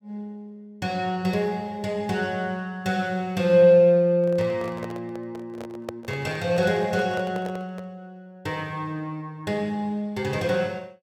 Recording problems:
handling noise; from 4 to 8 s; peak -5 dB vs average level

